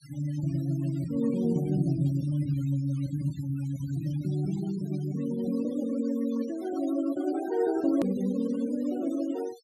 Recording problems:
denoising artefacts; signal-to-artefact ratio 22 dB
hard cut with a click; at 8 s

